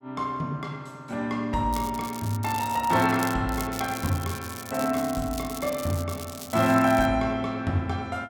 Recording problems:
crackling; from 1.5 to 3.5 s and from 3.5 to 7 s; loose cable, SNR 13 dB

